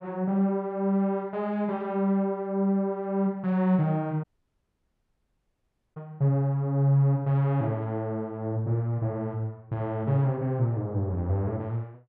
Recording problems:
audio cutting out; at 4 s for 1.5 s

